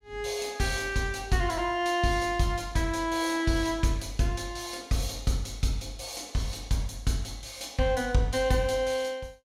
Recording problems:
none

